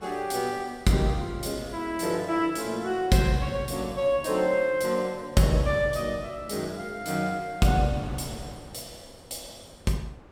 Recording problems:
wind noise; below 730 Hz, SNR 22 dB

